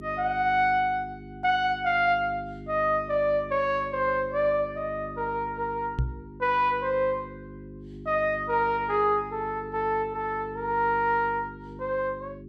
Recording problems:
hum; 50 Hz, harmonics up to 400 Hz, SNR 16 dB
microphone thump; at 6 s; peak +3 dB vs average level

